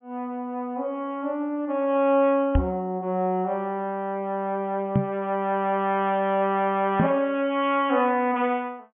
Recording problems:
treble cut off; nothing above 3.4 kHz
knock on the microphone; at 2.5 s, at 5 s and at 7 s; peak +6 dB vs average level

